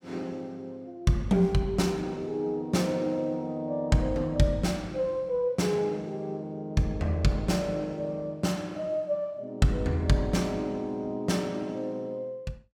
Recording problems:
none

